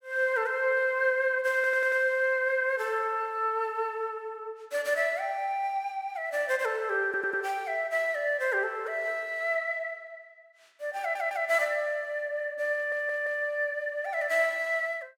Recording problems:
stutter; 4 times, first at 1.5 s

